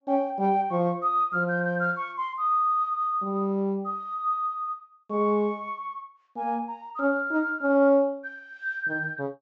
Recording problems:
low-pass filter; nothing above 8 kHz

